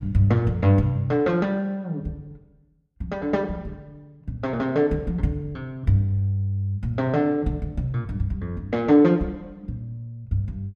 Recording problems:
none

